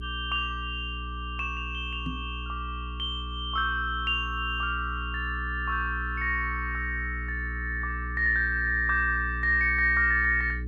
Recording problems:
electrical hum; 60 Hz, harmonics up to 420 Hz, SNR 9 dB
microphone bump; at 2 s; peak -3 dB vs average level

